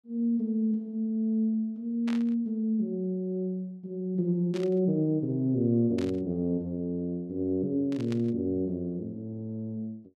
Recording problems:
static burst; 4 times, first at 2 s; peak -8 dB vs average level

